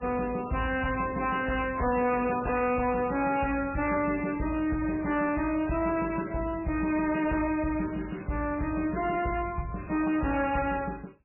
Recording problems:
lossy codec; MP3, log-spectral distance 5 dB, nothing above 2.7 kHz
distorted audio; soft clipping, signal-to-distortion ratio 11 dB

